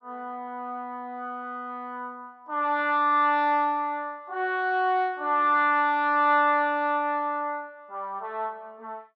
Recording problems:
none

